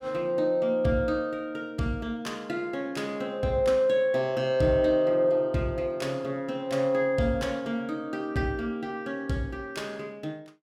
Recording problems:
none

